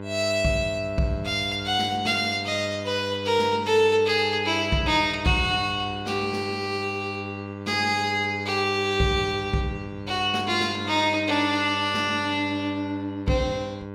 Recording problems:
hum; 50 Hz, harmonics up to 1.6 kHz, SNR 11 dB

